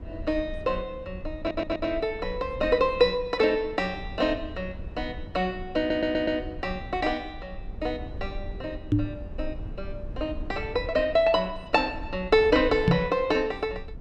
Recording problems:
low-frequency rumble; below 86 Hz, SNR 14 dB
stutter; at 1.5 s and at 6 s
microphone thump; at 9 s and at 13 s; peak +7 dB vs average level

